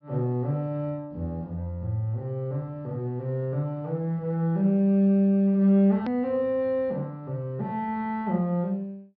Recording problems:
treble missing; nothing above 5.5 kHz
hard cut with a click; at 6 s

